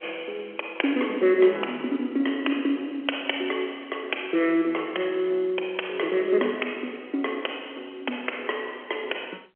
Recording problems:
telephone audio; 300 Hz to 3.2 kHz, G.711

